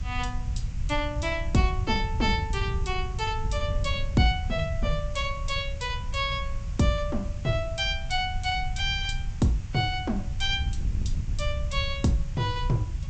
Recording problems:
treble missing; nothing above 8 kHz
hiss; slope -1 dB per octave, SNR 22 dB
low-frequency rumble; below 88 Hz, SNR 7 dB
wind on the microphone; below 90 Hz, SNR 8 dB

